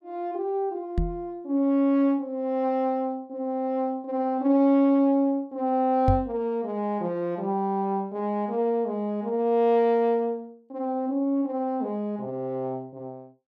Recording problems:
microphone bump; at 1 s and at 6 s; peak +5 dB vs average level

